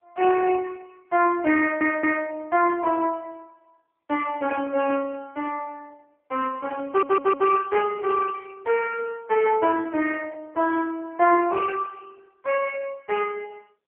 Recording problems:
telephone audio; 280 Hz to 2.9 kHz, AMR-NB
stutter; at 1.5 s and at 7 s

